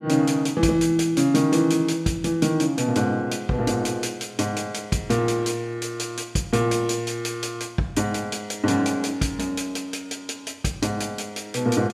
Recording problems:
none

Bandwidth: 14.5 kHz